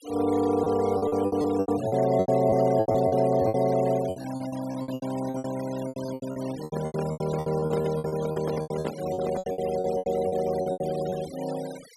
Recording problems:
noise reduction artefacts; signal-to-artefact ratio 18 dB
packet loss; 20% of the sound replaced, filled with repeated pitch periods
handling noise; from 6.5 to 9.5 s; peak -1 dB vs average level

